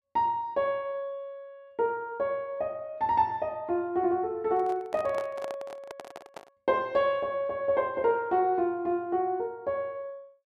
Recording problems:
microphone handling noise; from 4.5 to 6.5 s; peak -6 dB vs average level

